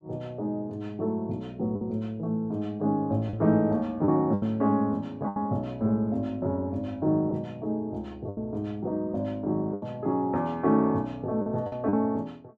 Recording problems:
packet loss; 5% of the sound replaced, filled with the last packet

